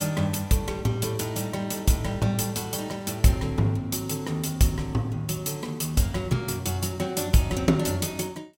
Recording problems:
none

